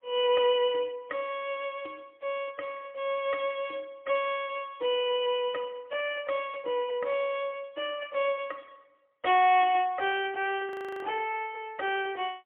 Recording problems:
telephone audio; 280 Hz to 3.4 kHz, AMR-NB, then MP3
frozen audio; at 11 s

